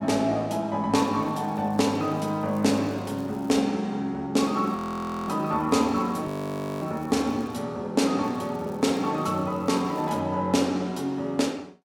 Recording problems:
crackle; from 1 to 3.5 s, from 4.5 to 7.5 s and from 8 to 10 s; loose cable, SNR 29 dB
frozen audio; at 5 s for 0.5 s and at 6.5 s for 0.5 s

